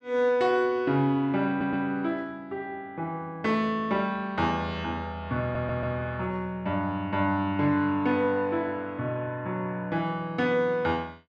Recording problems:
stutter; at 1.5 s and at 5.5 s

